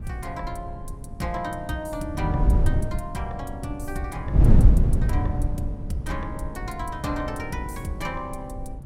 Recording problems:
wind noise; below 120 Hz, SNR -8 dB

